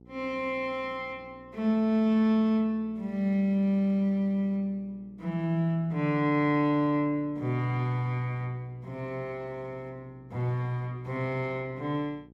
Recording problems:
hum; 60 Hz, harmonics up to 900 Hz, SNR 26 dB

